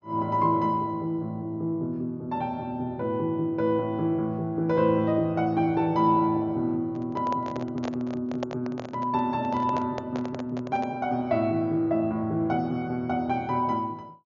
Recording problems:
low-pass filter; nothing above 6.9 kHz
microphone handling noise; from 7 to 11 s; peak -1 dB vs average level

